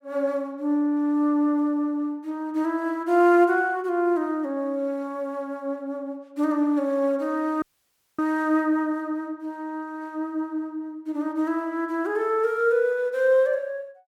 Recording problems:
audio cutting out; at 7.5 s for 0.5 s

